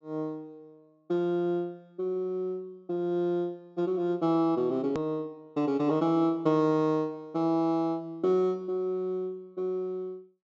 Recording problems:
treble cut off; nothing above 8 kHz
click at an edit; at 5 s

